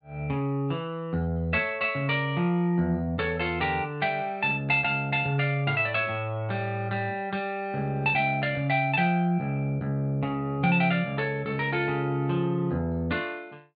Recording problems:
treble cut off; nothing above 4.6 kHz

